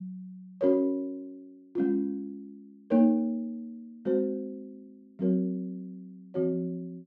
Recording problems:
none

